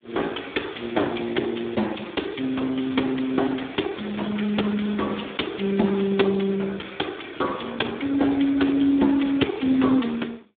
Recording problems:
phone line; 220 Hz to 3.6 kHz, Speex
crackle; from 3 to 5.5 s and at 7.5 s; loose cable, SNR 25 dB

